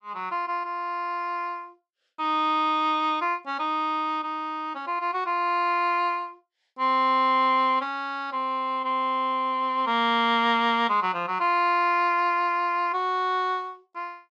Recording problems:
none

